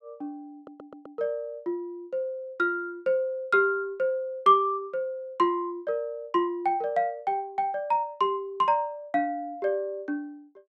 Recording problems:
audio stuttering; at 0.5 s

